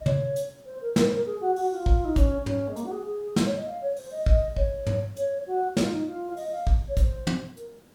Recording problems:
background hiss; SNR 29 dB

